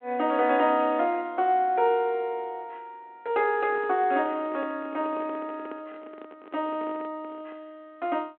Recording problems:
telephone audio; 260 Hz to 3.4 kHz, G.726
microphone handling noise; from 3.5 to 7.5 s; peak -12 dB vs average level

